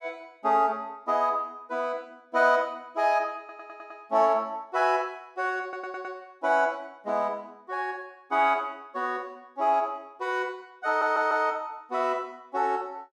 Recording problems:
stutter; at 3.5 s, at 5.5 s and at 11 s

